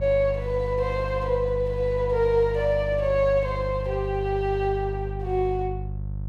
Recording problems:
electrical hum; 50 Hz, harmonics up to 350 Hz, SNR 7 dB

